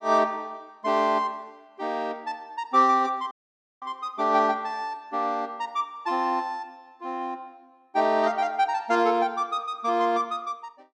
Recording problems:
dropout; at 3.5 s for 0.5 s

